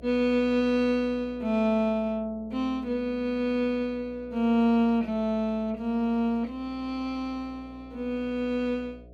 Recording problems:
mains hum; 60 Hz, harmonics up to 720 Hz, SNR 22 dB

